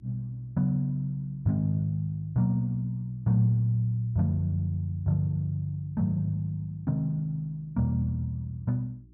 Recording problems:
mains hum; 60 Hz, harmonics up to 360 Hz, SNR 28 dB

